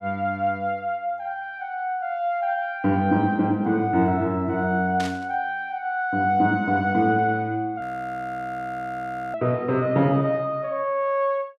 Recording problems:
burst of static; at 5 s; peak -6 dB vs average level
frozen audio; at 8 s for 1.5 s

